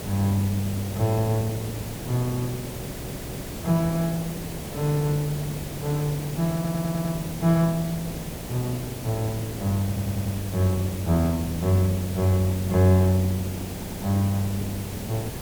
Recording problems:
hiss; SNR 9 dB
stutter; 4 times, first at 3 s

